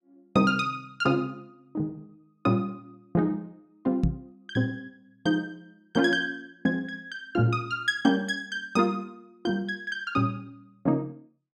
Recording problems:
microphone bump; at 4 s; peak +7 dB vs average level

